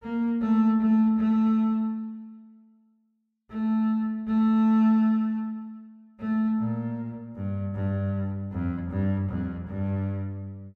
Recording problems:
none

